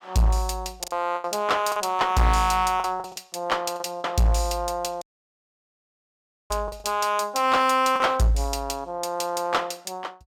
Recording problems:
distorted audio; hard clipping, uneven, signal-to-distortion ratio 10 dB
lost packets; 5% of the sound replaced, filled with the last packet
audio cutting out; at 5 s for 1.5 s

